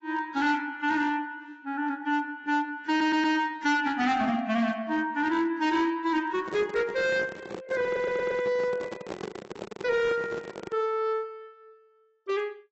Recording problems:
lossy compression; AAC, log-spectral distance 2 dB, nothing above 7.6 kHz
distorted audio; hard clipping, signal-to-distortion ratio 12 dB
stutter; at 3 s and at 8 s
microphone handling noise; from 6.5 to 11 s; peak -4 dB vs average level

